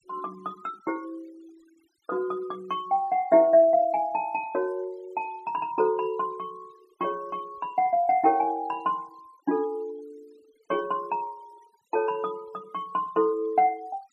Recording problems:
denoising artefacts; signal-to-artefact ratio 28 dB

